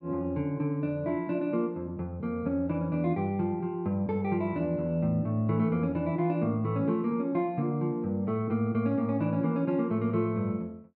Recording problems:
treble missing; nothing above 5.5 kHz

